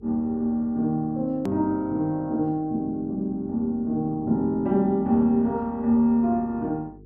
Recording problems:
mains hum; 50 Hz, harmonics up to 450 Hz, SNR 25 dB
click at an edit; at 1.5 s

